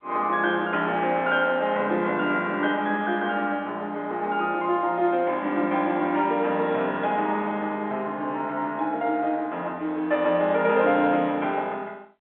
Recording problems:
telephone audio; 240 Hz to 3.6 kHz, G.711

